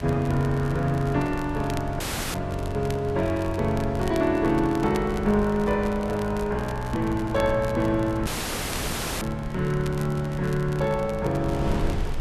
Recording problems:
wind on the microphone; below 150 Hz, SNR 12 dB
crackling; vinyl, SNR 20 dB
audio cutting out; at 2 s and at 8.5 s for 1 s

